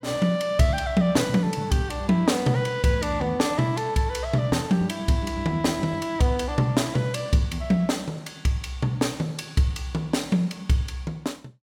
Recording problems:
none

